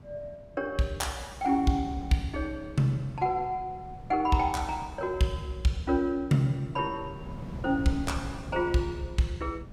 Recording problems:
wind on the microphone; below 230 Hz, SNR 15 dB

